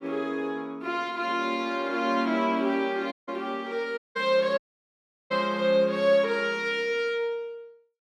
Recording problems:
audio cutting out; at 3 s, at 4 s and at 4.5 s for 0.5 s

